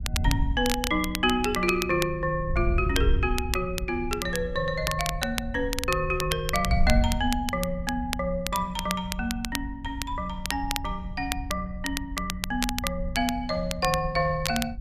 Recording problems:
wind noise; below 80 Hz, SNR 6 dB
crackling; vinyl, SNR 6 dB

